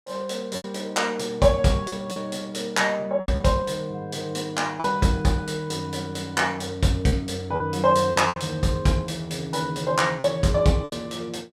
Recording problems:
lost packets; 6% of the sound replaced, filled with repeated pitch periods

